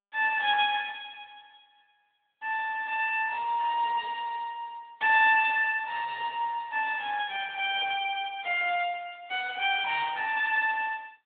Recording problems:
telephone audio; 520 Hz to 3.5 kHz, AMR-NB

